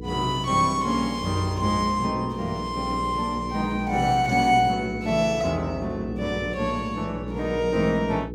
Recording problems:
electrical hum; 60 Hz, harmonics up to 480 Hz, SNR 11 dB

